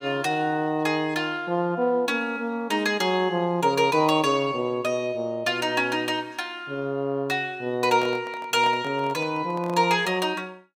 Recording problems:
handling noise; from 8 to 10 s; peak -7 dB vs average level

